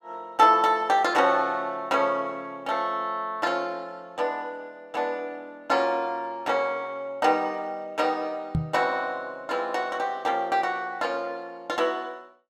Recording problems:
microphone thump; at 8.5 s; peak +3 dB vs average level

